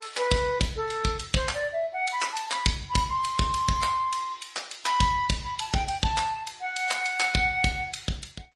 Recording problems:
lossy compression; MP3, then Opus, log-spectral distance 4 dB, nothing above 10.4 kHz

